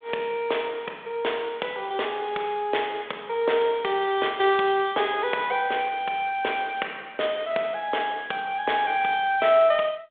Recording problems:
phone line; 320 Hz to 3.6 kHz, G.726

